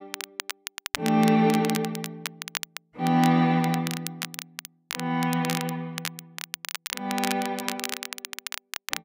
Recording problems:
crackling; vinyl, SNR 9 dB

